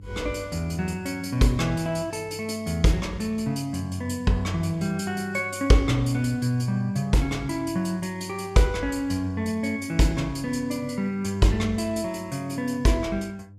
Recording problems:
mains hum; 50 Hz, harmonics up to 500 Hz, SNR 20 dB

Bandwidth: 14.5 kHz